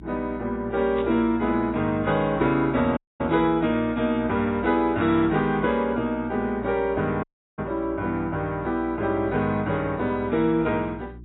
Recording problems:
lossy codec; AAC, log-spectral distance 2 dB, nothing above 3.4 kHz
hum; 60 Hz, harmonics up to 360 Hz, SNR 19 dB
static burst; at 1 s and at 3.5 s; peak -14 dB vs average level
dropout; at 3 s and at 7 s

